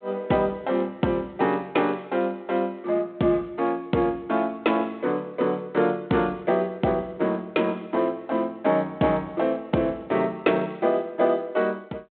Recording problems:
phone line; 170 Hz to 3.9 kHz, G.726

